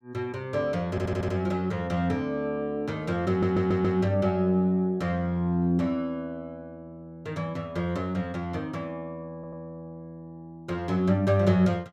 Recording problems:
audio stuttering; at 1 s, at 3.5 s and at 9.5 s

